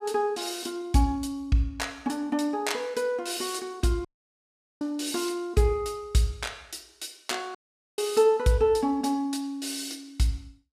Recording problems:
audio cutting out; at 4 s for 1 s and at 7.5 s

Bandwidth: 15.5 kHz